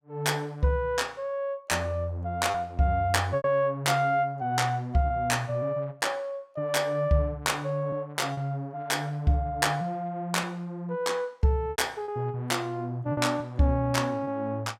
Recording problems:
lost packets; 3% of the sound replaced, filled with repeated pitch periods

